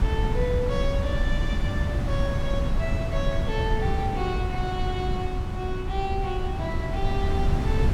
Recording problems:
wind noise; below 130 Hz, SNR -3 dB

